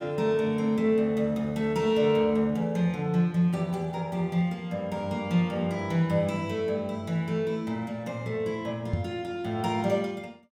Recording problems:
microphone bump; at 9 s; peak +4 dB vs average level

